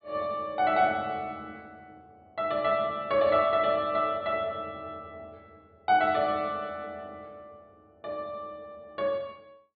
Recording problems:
low-pass filter; nothing above 4.6 kHz

